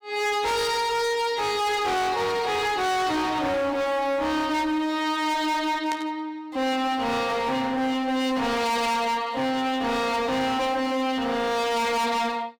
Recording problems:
distortion; hard clipping, uneven, signal-to-distortion ratio 6 dB
static burst; at 6 s; peak -7 dB vs average level

